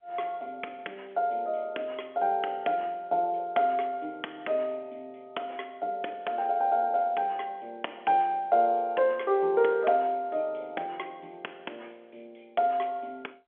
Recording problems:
phone line; 280 Hz to 3.4 kHz, G.711

